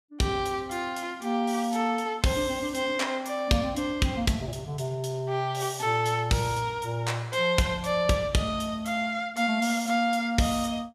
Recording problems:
none

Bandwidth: 15 kHz